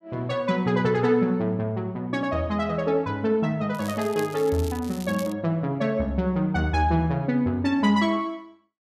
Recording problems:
crackling; from 3.5 to 5.5 s; loose cable, SNR 18 dB

